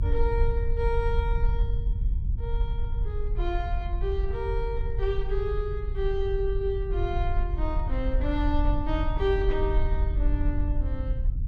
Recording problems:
rumble; below 60 Hz, SNR -2 dB

